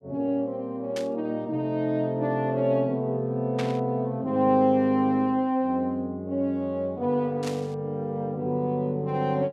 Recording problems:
static burst; at 1 s, at 3.5 s and at 7.5 s; peak -5 dB vs average level

